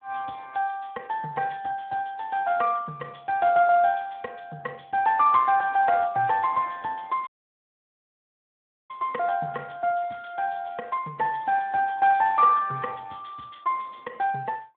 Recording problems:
phone line; 260 Hz to 2.9 kHz, Speex
dropout; at 7.5 s for 1.5 s

